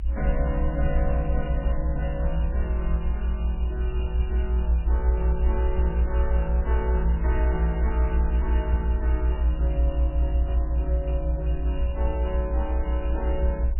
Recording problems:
codec artefacts; MP3, log-spectral distance 2 dB, nothing above 2.5 kHz
rumble; below 62 Hz, strongest tone 56 Hz, SNR -7 dB

